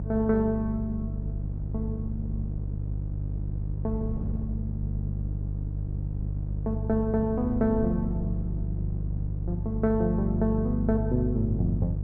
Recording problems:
hum; 50 Hz, harmonics up to 350 Hz, SNR 3 dB
wind noise; below 180 Hz, SNR 11 dB

